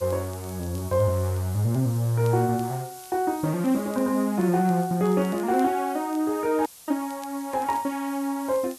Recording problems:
background hiss; SNR 18 dB
crackle; vinyl, SNR 29 dB
audio cutting out; at 6.5 s

